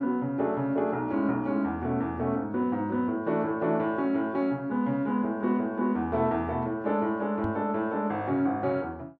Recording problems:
microphone bump; at 7.5 s; peak -2 dB vs average level

